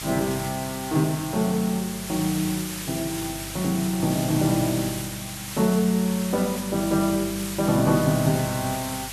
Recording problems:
electrical hum; 50 Hz, harmonics up to 550 Hz, SNR 19 dB
background hiss; slope +1 dB per octave, SNR 8 dB

